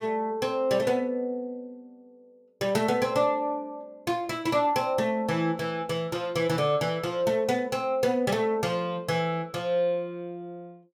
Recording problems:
none

